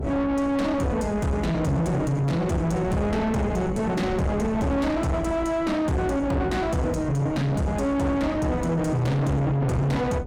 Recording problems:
distorted audio; soft clipping, signal-to-distortion ratio 6 dB
wind on the microphone; below 370 Hz, SNR 11 dB

